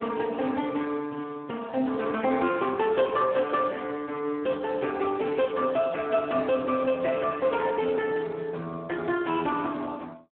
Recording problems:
phone line; 190 Hz to 3.3 kHz, Speex

